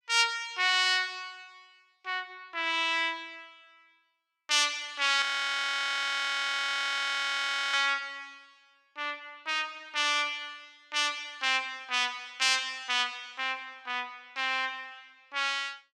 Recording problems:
audio freezing; at 5 s for 2.5 s

